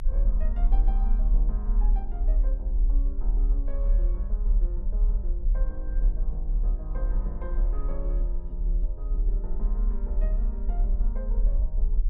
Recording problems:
rumble; below 40 Hz, strongest tone 36 Hz, SNR -14 dB

